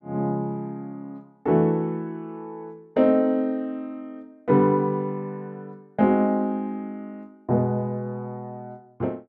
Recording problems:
none

